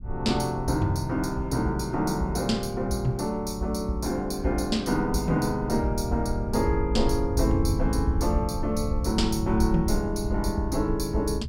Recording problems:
rumble; below 92 Hz, SNR 7 dB

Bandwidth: 16.5 kHz